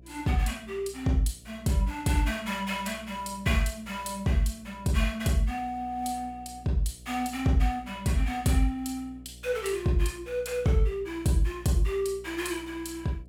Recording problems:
electrical hum; 60 Hz, harmonics up to 660 Hz, SNR 21 dB

